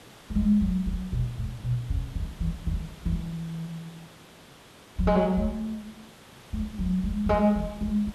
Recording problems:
background hiss; slope -4 dB per octave, SNR 20 dB

